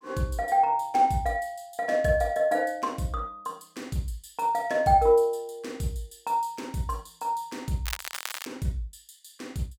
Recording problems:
crackling; at 8 s; loose cable, SNR 9 dB

